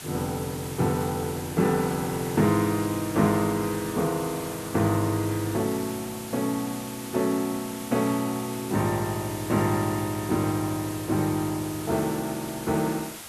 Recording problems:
background hiss; slope -1 dB per octave, SNR 12 dB

